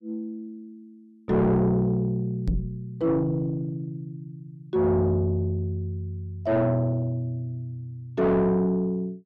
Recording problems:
distortion; soft clipping, signal-to-distortion ratio 7 dB
microphone thump; at 2.5 s; peak +3 dB vs average level

